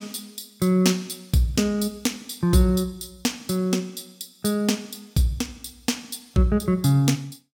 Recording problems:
none

